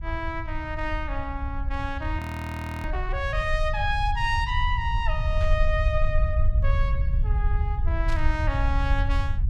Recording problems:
rumble; below 76 Hz, SNR -2 dB
audio freezing; at 2 s for 0.5 s
burst of static; at 5.5 s and at 8 s; peak -7 dB vs average level

